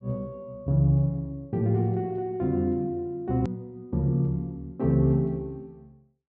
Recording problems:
treble cut off; nothing above 8 kHz
hard cut with a click; at 3.5 s

